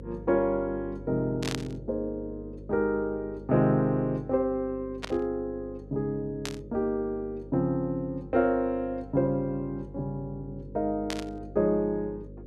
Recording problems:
electrical hum; 50 Hz, harmonics up to 550 Hz, SNR 15 dB
static burst; 4 times, first at 1.5 s; peak -1 dB vs average level

